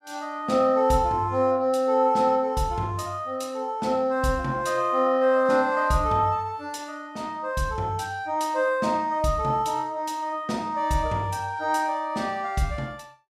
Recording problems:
none

